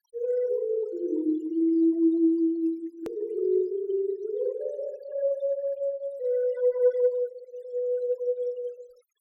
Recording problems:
noise reduction artefacts; signal-to-artefact ratio 26 dB
click at an edit; at 3 s

